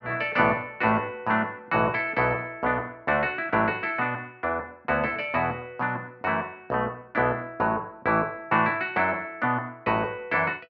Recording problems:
none

